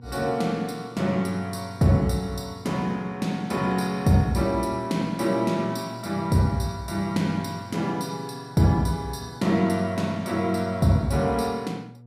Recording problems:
electrical hum; 60 Hz, harmonics up to 720 Hz, SNR 21 dB

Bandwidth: 15 kHz